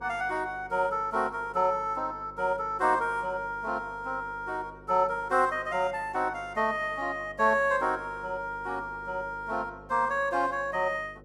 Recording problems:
hum; 50 Hz, harmonics up to 550 Hz, SNR 22 dB

